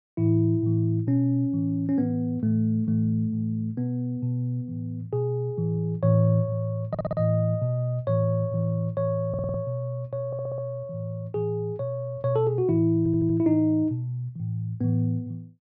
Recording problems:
stutter; 4 times, first at 7 s

